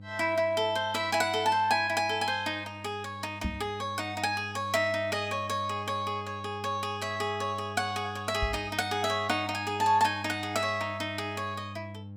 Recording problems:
hum; 50 Hz, harmonics up to 600 Hz, SNR 15 dB
knock on the microphone; at 3.5 s and at 8.5 s; peak 0 dB vs average level

